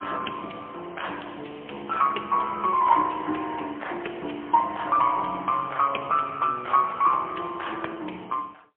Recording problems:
telephone audio; 240 Hz to 3.3 kHz, AMR-NB, then MP3

